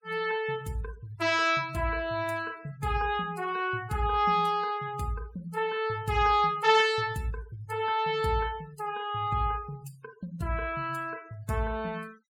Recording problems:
denoising artefacts; signal-to-artefact ratio 24 dB

